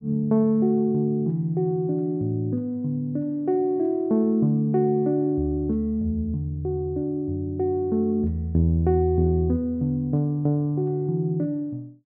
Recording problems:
none

